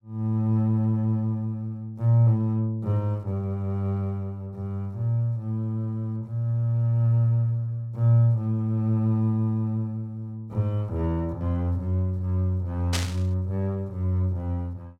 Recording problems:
burst of static; at 13 s; peak +2 dB vs average level

